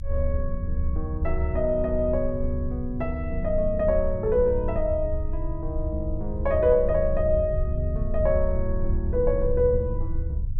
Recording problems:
rumble; below 72 Hz, strongest tone 20 Hz, SNR 4 dB

